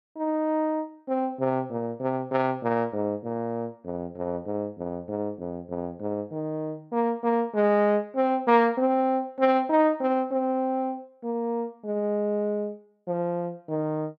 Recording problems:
none

